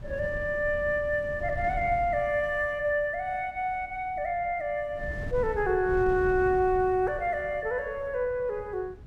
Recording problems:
wind on the microphone; below 140 Hz, SNR 14 dB

